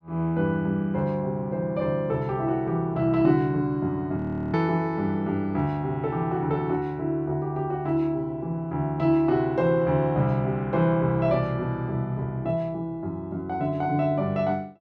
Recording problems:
frozen audio; at 4 s

